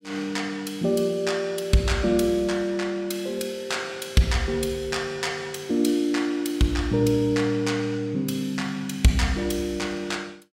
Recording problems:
none

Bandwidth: 16 kHz